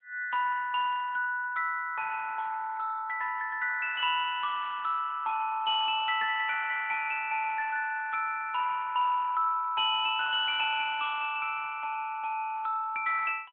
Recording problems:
telephone audio; 370 Hz to 3.3 kHz, AMR-NB

